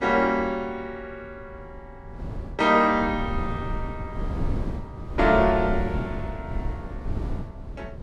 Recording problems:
wind noise; below 150 Hz, SNR 9 dB

